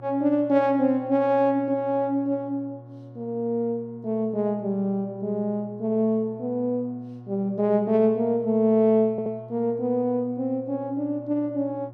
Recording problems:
electrical hum; 60 Hz, harmonics up to 1.1 kHz, SNR 20 dB
stutter; at 9 s

